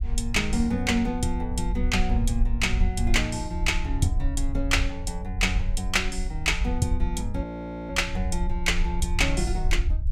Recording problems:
rumble; below 60 Hz, SNR 3 dB
audio freezing; at 7.5 s

